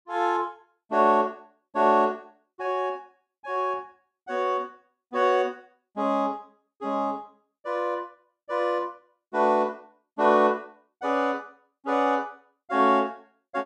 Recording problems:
none

